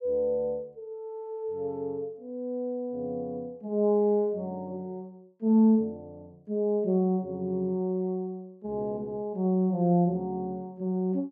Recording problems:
none

